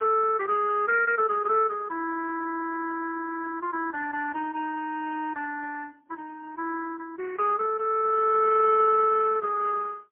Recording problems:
phone line; 340 Hz to 2.6 kHz, AMR-NB, then MP3

